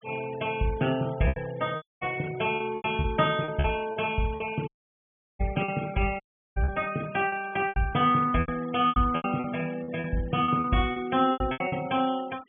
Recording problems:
low-pass filter; nothing above 3.4 kHz
denoising artefacts; signal-to-artefact ratio 19 dB
lost packets; 12% of the sound replaced, filled with repeated pitch periods
dropout; at 2 s, at 4.5 s for 0.5 s and at 6 s

